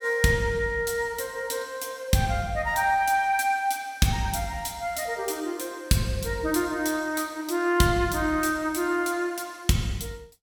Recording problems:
none

